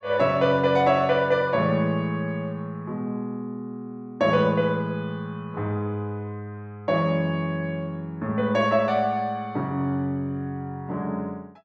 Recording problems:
none

